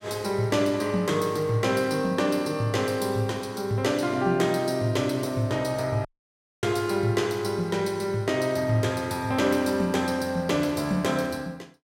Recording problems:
audio cutting out; at 6 s for 0.5 s

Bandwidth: 16.5 kHz